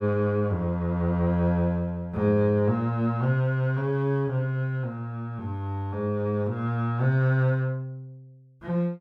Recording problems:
none

